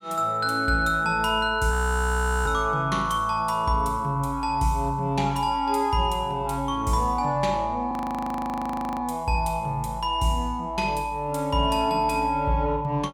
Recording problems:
audio freezing; at 1.5 s for 0.5 s and at 8 s for 1 s

